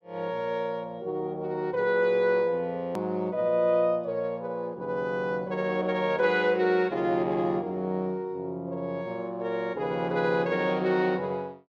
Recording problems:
hard cut with a click; at 3 s

